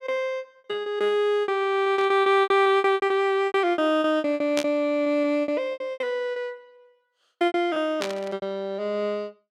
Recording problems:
packet loss; 17% of the sound replaced, filled with repeated pitch periods
burst of static; at 2 s, at 4.5 s and at 8 s; peak -1 dB vs average level

